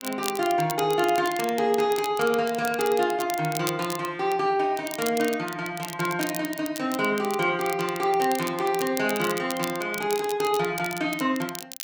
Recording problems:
crackle; vinyl, SNR 12 dB

